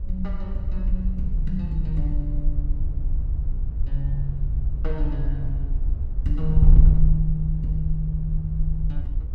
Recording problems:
wind on the microphone; below 56 Hz, SNR -4 dB

